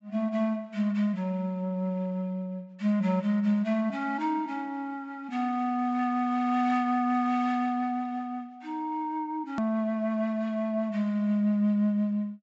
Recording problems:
treble cut off; nothing above 8 kHz
click at an edit; at 9.5 s

